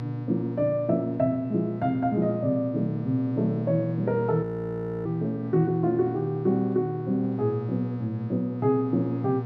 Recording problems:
hum; 60 Hz, harmonics up to 960 Hz, SNR 9 dB
frozen audio; at 4.5 s for 0.5 s

